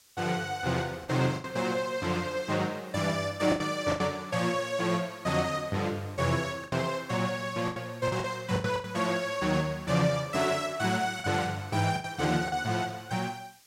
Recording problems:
hiss; slope +2 dB per octave, SNR 27 dB
packet loss; 6% of the sound replaced, filled with the last packet

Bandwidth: 16 kHz